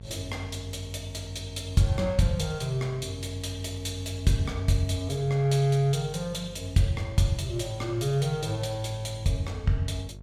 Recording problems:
hum; 50 Hz, harmonics up to 700 Hz, SNR 16 dB

